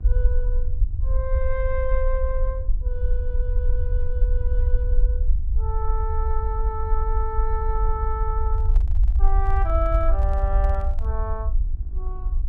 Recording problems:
electrical hum; 50 Hz, harmonics up to 1.1 kHz, SNR 20 dB
low-frequency rumble; below 56 Hz, SNR -6 dB
microphone handling noise; from 8.5 to 11 s; peak -9 dB vs average level

